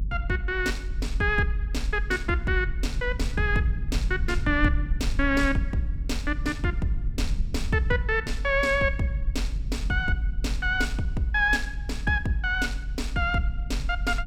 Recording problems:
rumble; below 56 Hz, SNR 4 dB

